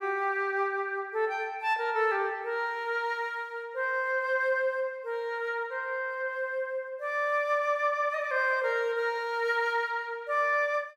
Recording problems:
none

